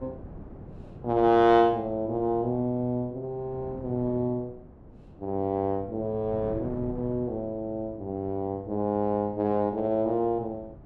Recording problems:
wind on the microphone; below 340 Hz, SNR 18 dB

